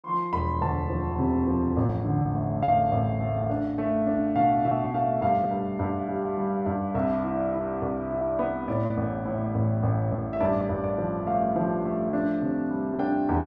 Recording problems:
lost packets; 3% of the sound replaced, filled with repeated pitch periods

